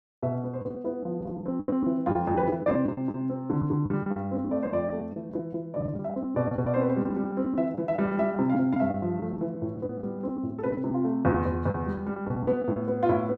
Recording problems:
lost packets; 12% of the sound replaced, filled with the last packet

